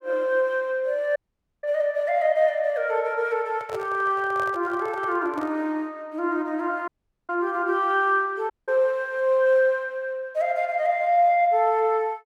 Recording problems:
audio cutting out; at 1 s, at 7 s and at 8.5 s
handling noise; from 3.5 to 5.5 s; peak -8 dB vs average level

